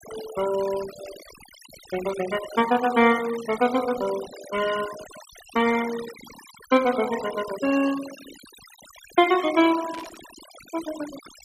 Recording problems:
denoising artefacts; signal-to-artefact ratio 14 dB
burst of static; at 10 s; peak -13 dB vs average level

